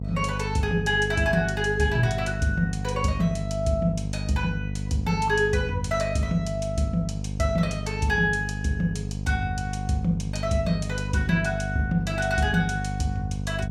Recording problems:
hum; 50 Hz, harmonics up to 500 Hz, SNR 5 dB

